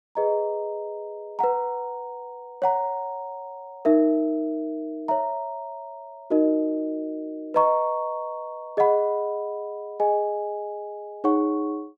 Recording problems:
none

